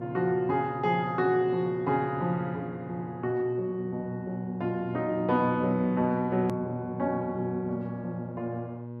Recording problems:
hum; 60 Hz, harmonics up to 1.1 kHz, SNR 12 dB
hard cut with a click; at 6.5 s

